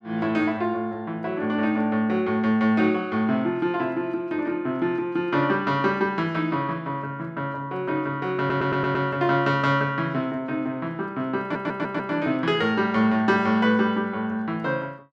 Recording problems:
audio stuttering; at 8.5 s and at 11 s

